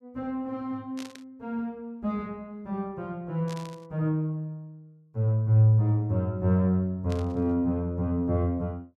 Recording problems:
burst of static; at 1 s, at 3.5 s and at 7 s; peak -11 dB vs average level

